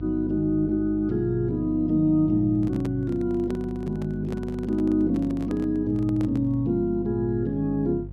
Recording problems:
hum; 50 Hz, harmonics up to 500 Hz, SNR 13 dB
handling noise; from 2.5 to 6.5 s; peak -9 dB vs average level

